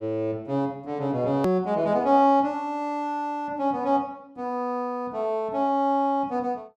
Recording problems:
edit click; at 1.5 s

